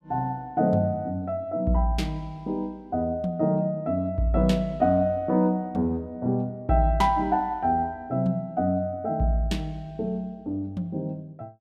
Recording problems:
none

